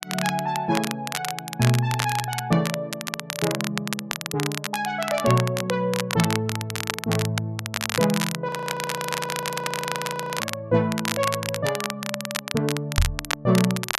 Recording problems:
crackling; vinyl, SNR 4 dB
frozen audio; at 8.5 s for 2 s
microphone thump; at 13 s; peak +7 dB vs average level

